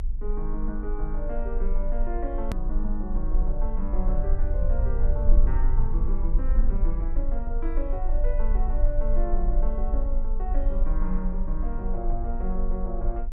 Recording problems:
rumble; below 42 Hz, strongest tone 24 Hz, SNR -7 dB
edit click; at 2.5 s

